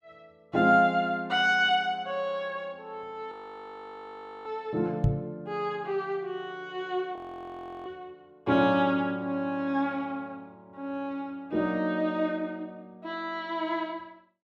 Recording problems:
frozen audio; at 3.5 s for 1 s and at 7 s for 0.5 s
knock on the microphone; at 5 s; peak +7 dB vs average level

